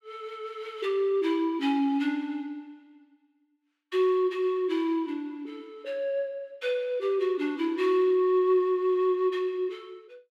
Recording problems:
none

